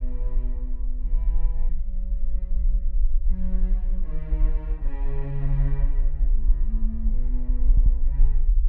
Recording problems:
low-frequency rumble; below 40 Hz, strongest tone 20 Hz, SNR -11 dB
stutter; at 7.5 s

